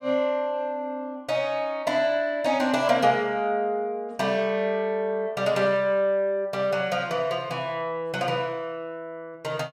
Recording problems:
none

